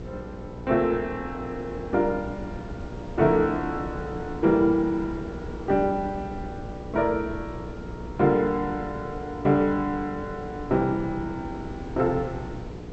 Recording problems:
low-pass filter; nothing above 7.9 kHz
hum; 60 Hz, harmonics up to 480 Hz, SNR 15 dB
wind on the microphone; below 370 Hz, SNR 14 dB

